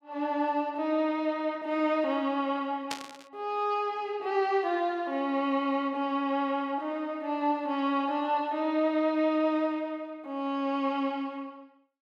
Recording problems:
static burst; at 3 s; peak -1 dB vs average level

